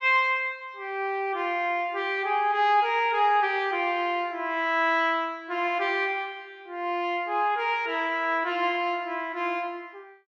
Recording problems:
none

